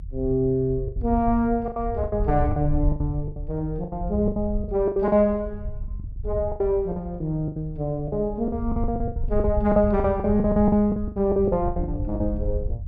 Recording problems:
low-frequency rumble; below 82 Hz, SNR 8 dB
lost packets; 16% of the sound replaced, filled with the last packet

